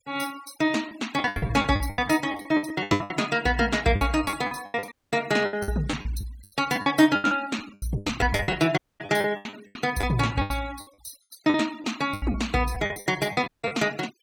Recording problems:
denoising artefacts; signal-to-artefact ratio 19 dB
lost packets; 20% of the sound replaced, filled with the last packet
audio cutting out; at 5 s, at 9 s and at 13 s

